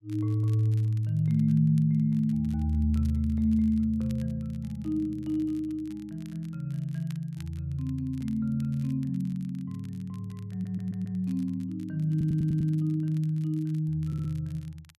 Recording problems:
crackling; vinyl, SNR 30 dB
audio stuttering; at 11 s, at 12 s and at 14 s

